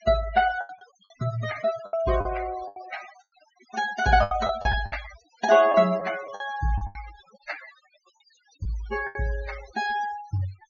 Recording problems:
low-pass filter; nothing above 6.7 kHz
noise reduction artefacts; signal-to-artefact ratio 14 dB
packet loss; 10% of the sound replaced, filled with the last packet

